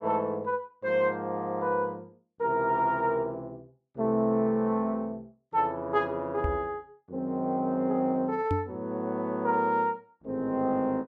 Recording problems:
knock on the microphone; at 6.5 s and at 8.5 s; peak +2 dB vs average level

